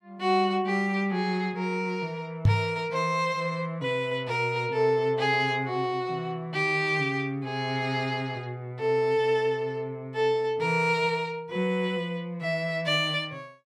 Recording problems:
microphone bump; at 2.5 s; peak +9 dB vs average level

